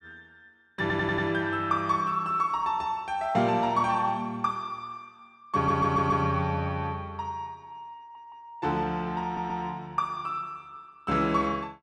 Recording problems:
stutter; 4 times, first at 1 s

